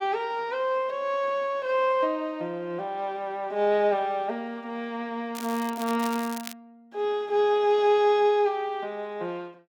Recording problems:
crackle; from 5.5 to 6.5 s; loose cable, SNR 14 dB

